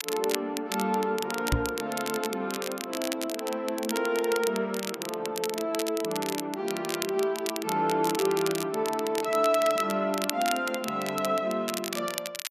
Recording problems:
crackling; vinyl, SNR 7 dB
microphone thump; at 1.5 s; peak +7 dB vs average level

